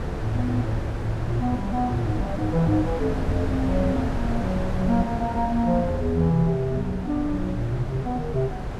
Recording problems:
wind noise; below 330 Hz, SNR 5 dB

